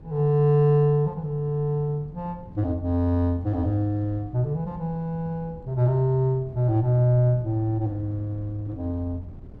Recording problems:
wind on the microphone; below 210 Hz, SNR 19 dB

